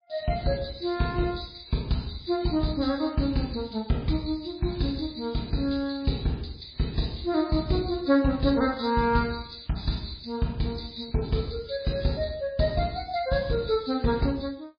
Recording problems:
lossy codec; MP3, log-spectral distance 7 dB, nothing above 4.6 kHz

